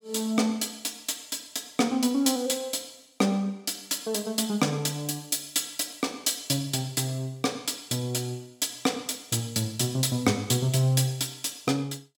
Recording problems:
none

